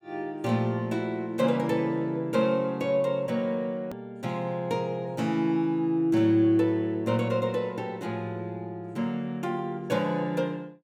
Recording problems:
edit click; at 4 s

